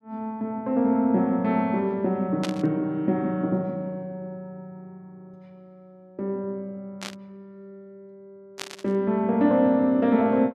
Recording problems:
burst of static; at 2.5 s, at 7 s and at 8.5 s; peak -4 dB vs average level

